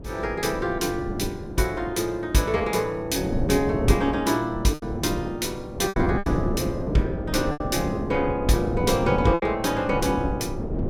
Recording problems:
wind on the microphone; below 360 Hz, SNR 5 dB
packet loss; 4% of the sound replaced, filled with repeated pitch periods

